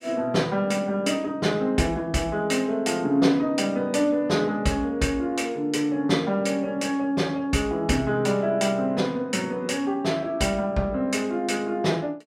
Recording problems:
none

